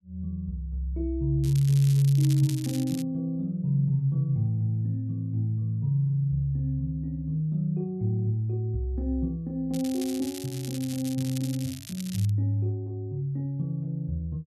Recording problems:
crackling; from 1.5 to 3 s and from 9.5 to 12 s; loose cable, SNR 14 dB

